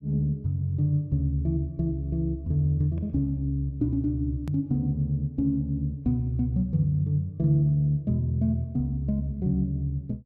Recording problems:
hard cut with a click; at 4.5 s

